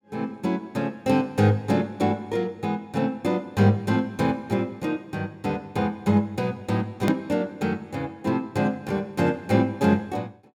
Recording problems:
hard cut with a click; at 7 s

